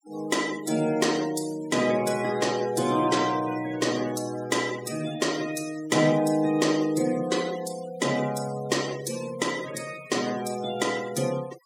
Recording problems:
noise reduction artefacts; signal-to-artefact ratio 14 dB

